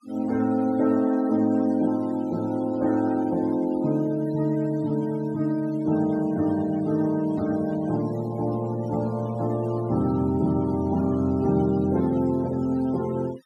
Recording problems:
denoising artefacts; signal-to-artefact ratio 20 dB

